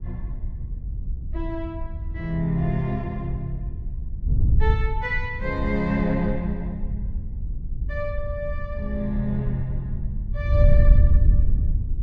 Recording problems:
wind on the microphone; below 80 Hz, SNR -2 dB

